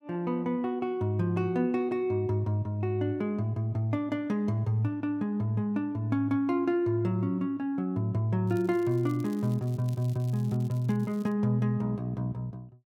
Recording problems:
crackle; from 8.5 to 11 s; loose cable, SNR 26 dB

